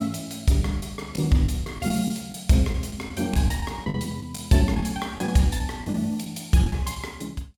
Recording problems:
packet loss; 8% of the sound replaced, filled with the last packet

